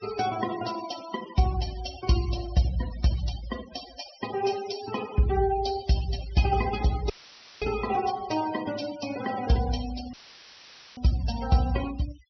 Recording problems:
low-pass filter; nothing above 5.9 kHz
noise reduction artefacts; signal-to-artefact ratio 13 dB
dropout; at 7 s for 0.5 s and at 10 s for 1 s; filled with static

